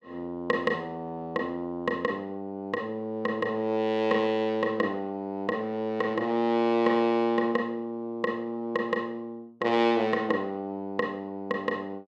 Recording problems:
none

